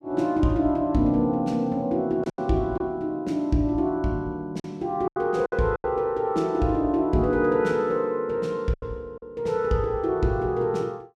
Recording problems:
lost packets; 5% of the sound replaced, filled with silence

